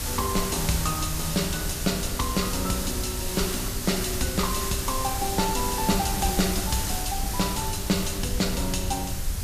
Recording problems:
hiss; slope -1 dB per octave, SNR 3 dB
rumble; below 86 Hz, SNR 7 dB

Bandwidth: 14.5 kHz